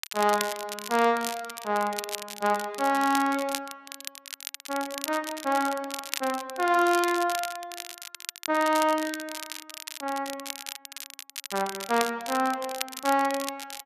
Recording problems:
crackle; vinyl, SNR 9 dB

